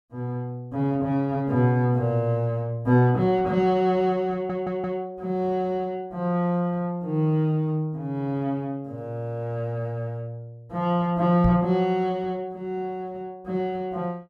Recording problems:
audio stuttering; at 4.5 s
knock on the microphone; at 11 s; peak +4 dB vs average level

